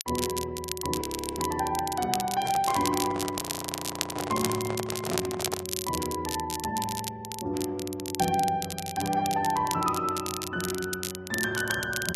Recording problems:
codec artefacts; Vorbis, log-spectral distance 2 dB, nothing above 10.4 kHz
crackle; vinyl, SNR 5 dB
frozen audio; at 1 s and at 3.5 s for 1 s
handling noise; from 2.5 to 5.5 s; peak +1 dB vs average level

